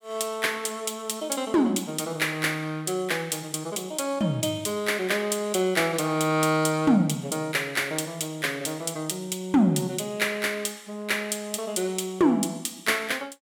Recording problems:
none

